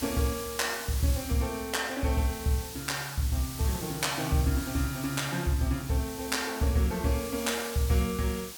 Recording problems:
background hiss; slope 0 dB per octave, SNR 10 dB

